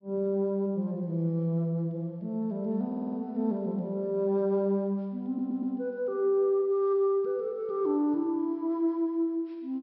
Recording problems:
low-pass filter; nothing above 5.5 kHz
stutter; at 3 s and at 5.5 s

